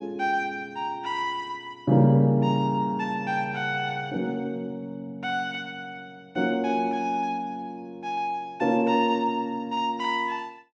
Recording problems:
none

